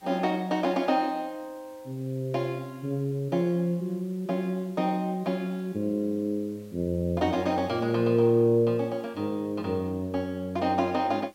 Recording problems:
hiss; slope -1 dB per octave, SNR 30 dB

